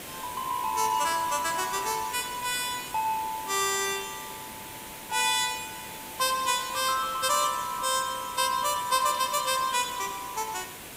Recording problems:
background hiss; slope -3 dB per octave, SNR 12 dB

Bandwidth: 15.5 kHz